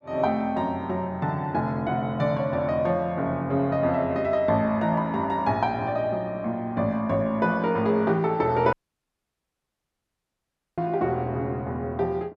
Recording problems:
audio cutting out; at 8.5 s for 2 s

